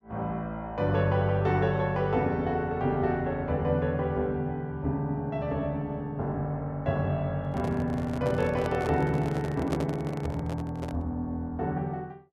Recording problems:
handling noise; from 7.5 to 11 s; peak 0 dB vs average level

